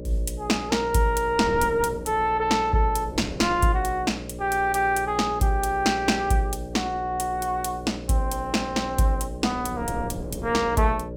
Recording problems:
mains hum; 60 Hz, harmonics up to 600 Hz, SNR 12 dB
wind noise; below 320 Hz, SNR 16 dB

